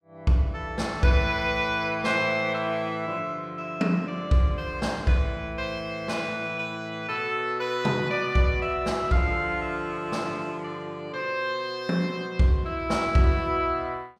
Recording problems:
none

